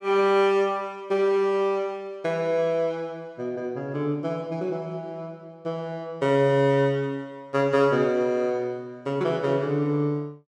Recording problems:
none

